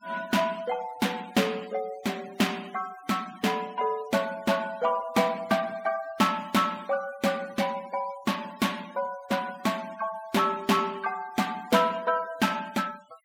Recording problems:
denoising artefacts; signal-to-artefact ratio 20 dB

